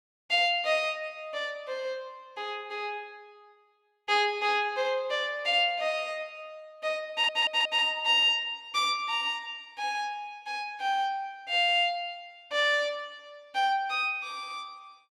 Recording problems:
audio stuttering; at 7 s

